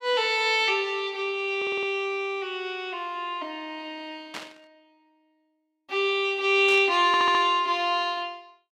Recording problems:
audio stuttering; at 1.5 s and at 7 s
static burst; at 4.5 s and at 6.5 s; peak -8 dB vs average level

